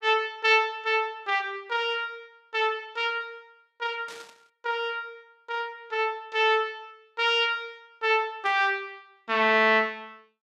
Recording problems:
static burst; at 4 s and at 8.5 s; peak -14 dB vs average level

